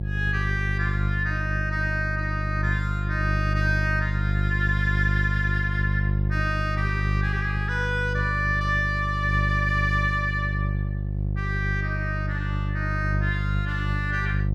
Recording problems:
electrical hum; 50 Hz, harmonics up to 500 Hz, SNR -1 dB

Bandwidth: 14.5 kHz